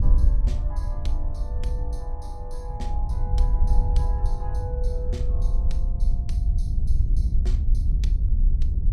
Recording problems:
wind on the microphone; below 60 Hz, SNR -13 dB

